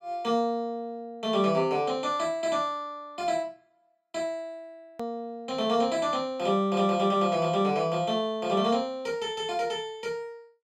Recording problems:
edit click; at 5 s

